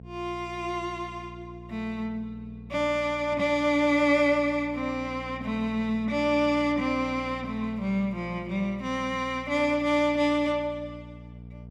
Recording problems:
hum; 60 Hz, harmonics up to 480 Hz, SNR 17 dB

